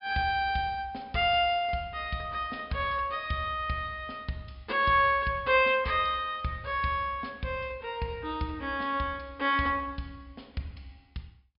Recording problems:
low-pass filter; nothing above 5.5 kHz

